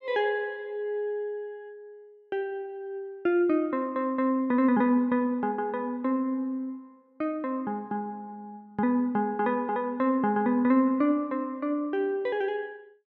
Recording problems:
none

